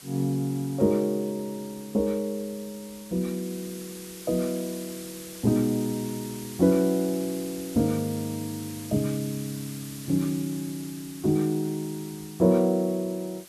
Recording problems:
background hiss; slope 0 dB per octave, SNR 15 dB

